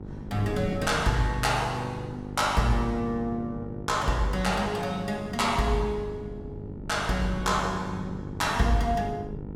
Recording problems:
hum; 50 Hz, harmonics up to 1 kHz, SNR 12 dB
wind noise; below 250 Hz, SNR 14 dB

